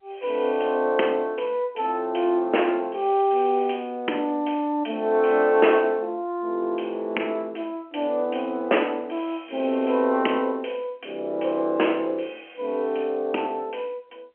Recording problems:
telephone audio; 240 Hz to 3.2 kHz, G.711

